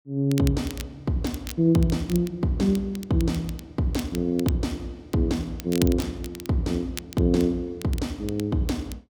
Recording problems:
crackling; vinyl, SNR 16 dB

